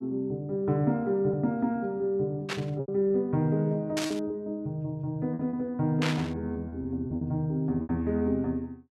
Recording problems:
packet loss; 6% of the sound replaced, filled with repeated pitch periods
static burst; at 2.5 s, at 4 s and at 6 s; peak +2 dB vs average level

